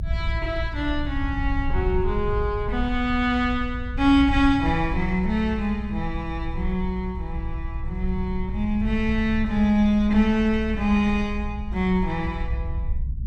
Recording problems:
rumble; below 70 Hz, SNR 7 dB

